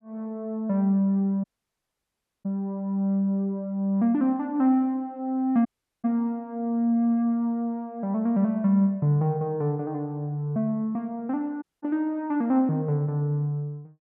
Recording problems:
audio cutting out; at 1.5 s for 1 s, at 5.5 s and at 12 s

